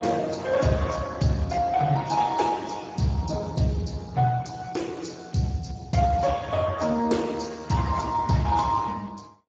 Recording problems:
lossy compression; AAC, then Speex, log-spectral distance 5 dB

